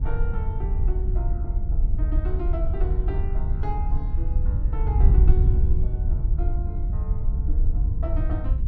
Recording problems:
wind noise; below 68 Hz, SNR -13 dB

